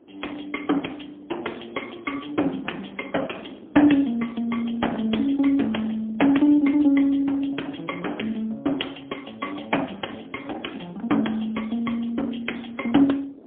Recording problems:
phone line; 220 Hz to 3.4 kHz, AMR-NB, then MP3
wind noise; below 460 Hz, SNR 22 dB

